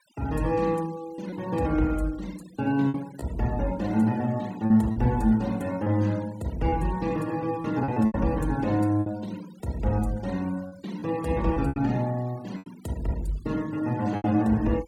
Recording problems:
denoising artefacts; signal-to-artefact ratio 22 dB
packet loss; 5% of the sound replaced, filled with repeated pitch periods

